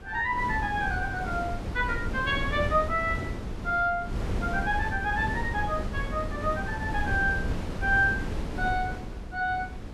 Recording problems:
wind noise; below 280 Hz, SNR 5 dB

